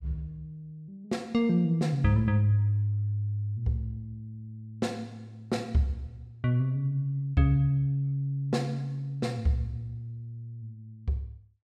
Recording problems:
none

